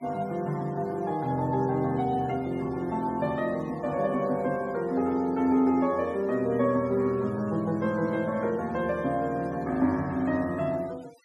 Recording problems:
denoising artefacts; signal-to-artefact ratio 25 dB

